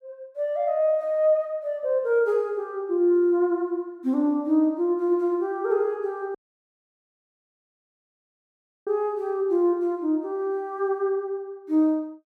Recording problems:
dropout; at 6.5 s for 2.5 s

